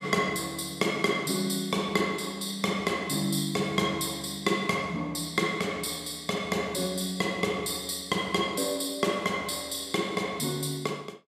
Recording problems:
none

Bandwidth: 14.5 kHz